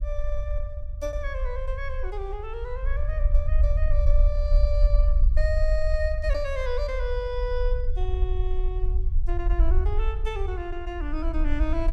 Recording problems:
low-frequency rumble; below 54 Hz, SNR -6 dB

